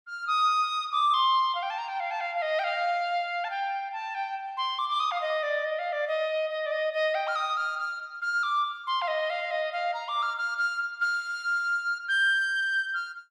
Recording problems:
none

